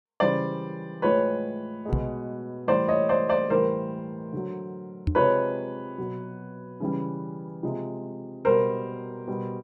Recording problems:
microphone thump; at 2 s and at 5 s; peak +5 dB vs average level

